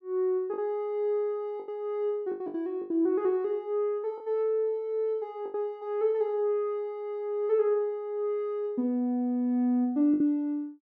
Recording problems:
packet loss; 5% of the sound replaced, filled with the last packet

